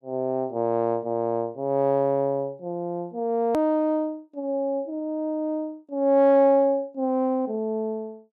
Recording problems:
edit click; at 3.5 s

